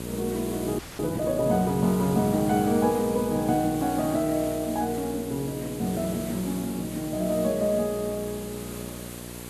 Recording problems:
electrical hum; 60 Hz, harmonics up to 1 kHz, SNR 11 dB
background hiss; slope -2 dB per octave, SNR 13 dB
frozen audio; at 1 s

